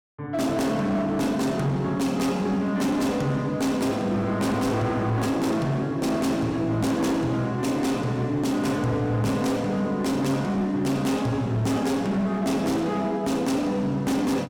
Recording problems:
distorted audio; hard clipping, signal-to-distortion ratio 10 dB

